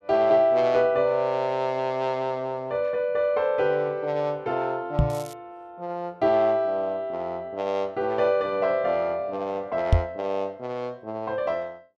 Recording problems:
microphone bump; at 5 s and at 10 s; peak +9 dB vs average level
crackle; at 5 s; loose cable, SNR 22 dB

